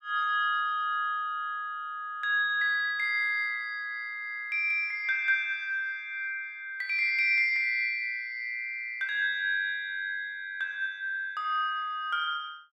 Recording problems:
none

